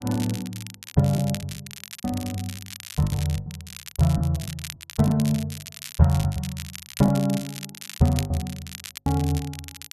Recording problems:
crackle; vinyl, SNR 13 dB
packet loss; 11% of the sound replaced, filled with the last packet

